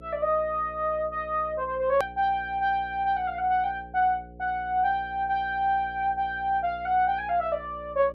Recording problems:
hum; 60 Hz, harmonics up to 540 Hz, SNR 20 dB
click at an edit; at 2 s

